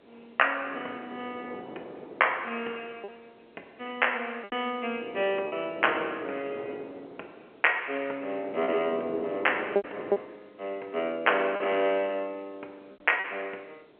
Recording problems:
telephone audio; 340 Hz to 3.1 kHz, G.711
wind noise; below 610 Hz, SNR 10 dB
packet loss; 4% of the sound replaced, filled with repeated pitch periods

